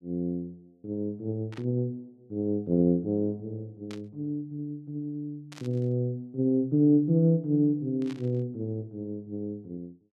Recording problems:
static burst; 4 times, first at 1.5 s; peak -13 dB vs average level

